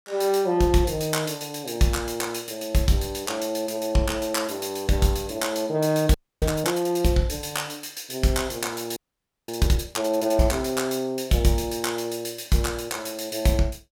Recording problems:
frozen audio; at 6 s and at 9 s for 0.5 s

